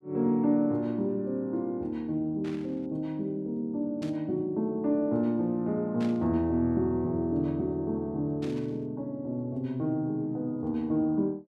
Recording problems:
burst of static; 4 times, first at 2.5 s; peak -11 dB vs average level

